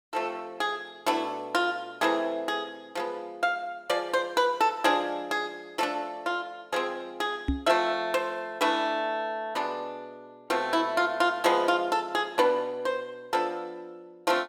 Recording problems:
microphone thump; at 7.5 s; peak +4 dB vs average level

